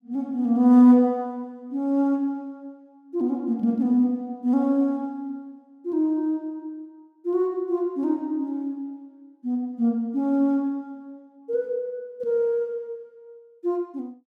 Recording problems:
none

